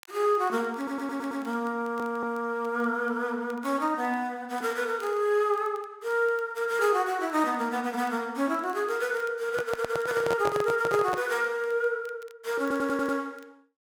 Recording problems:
crackling; vinyl, SNR 30 dB
audio stuttering; 4 times, first at 1 s
microphone handling noise; from 9.5 to 11 s; peak 0 dB vs average level

